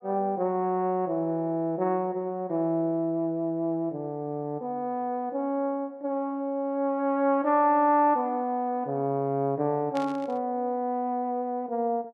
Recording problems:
burst of static; at 10 s; peak -9 dB vs average level

